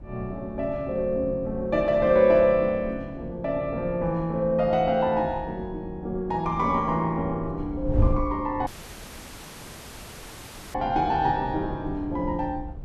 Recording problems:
wind on the microphone; below 100 Hz, SNR 12 dB
audio cutting out; at 8.5 s for 2 s

